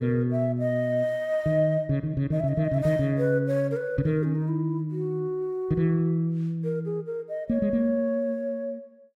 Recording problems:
none

